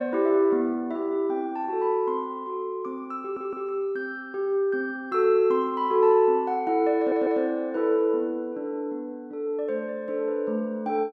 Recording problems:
stutter; at 3 s and at 7 s

